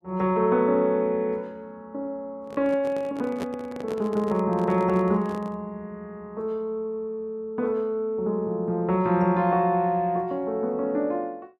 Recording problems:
microphone handling noise; from 2.5 to 5.5 s; peak -4 dB vs average level

